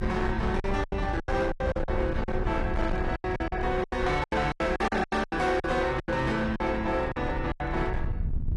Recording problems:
codec artefacts; AAC, log-spectral distance 2 dB, nothing above 11.3 kHz
distortion; hard clipping, uneven, signal-to-distortion ratio 11 dB
low-frequency rumble; below 100 Hz, SNR 6 dB
lost packets; 16% of the sound replaced, filled with silence

